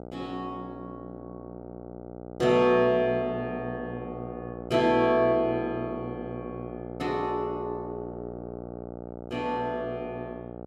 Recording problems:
hum; 60 Hz, harmonics up to 1.4 kHz, SNR 12 dB

